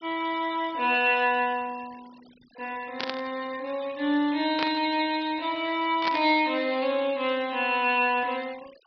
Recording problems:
low-pass filter; nothing above 5.5 kHz
denoising artefacts; signal-to-artefact ratio 23 dB
static burst; at 3 s, at 4.5 s and at 6 s; peak 0 dB vs average level

